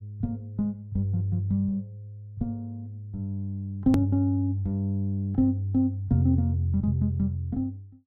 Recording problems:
hard cut with a click; at 4 s

